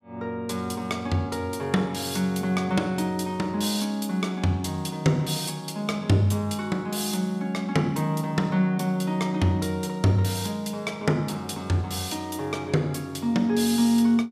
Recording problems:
none

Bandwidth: 14.5 kHz